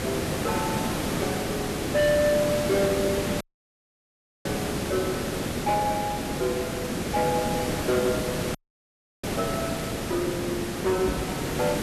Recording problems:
distorted audio; hard clipping, signal-to-distortion ratio 10 dB
background hiss; slope -5 dB per octave, SNR 1 dB
dropout; at 3.5 s for 1 s and at 8.5 s for 0.5 s
microphone bump; at 11 s; peak +1 dB vs average level

